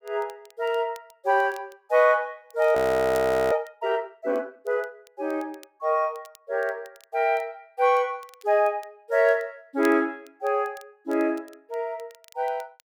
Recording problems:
crackle; vinyl, SNR 28 dB
frozen audio; at 3 s for 1 s

